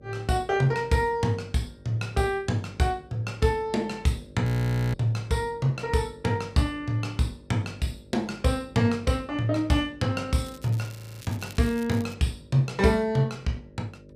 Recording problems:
electrical hum; 50 Hz, harmonics up to 600 Hz, SNR 24 dB
frozen audio; at 4.5 s and at 11 s
crackling; from 10 to 12 s; loose cable, SNR 21 dB

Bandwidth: 15 kHz